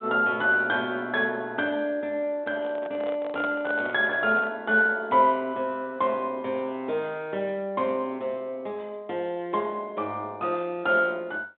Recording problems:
telephone audio; 190 Hz to 3.8 kHz, G.726
microphone handling noise; from 2.5 to 4.5 s; peak -5 dB vs average level

